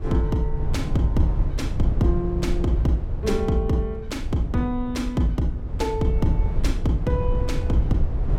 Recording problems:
low-frequency rumble; below 88 Hz, SNR 2 dB

